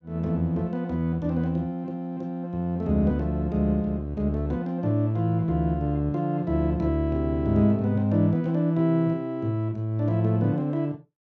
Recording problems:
none

